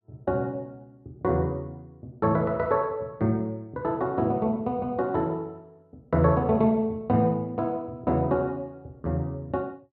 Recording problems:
none

